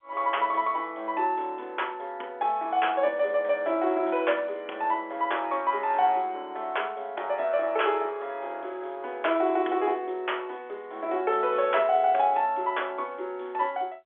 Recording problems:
phone line; 300 Hz to 3.4 kHz, G.711

